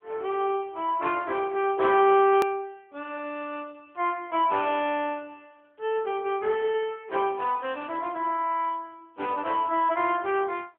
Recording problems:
telephone audio; 260 Hz to 3.4 kHz, AMR-NB
click at an edit; at 2.5 s

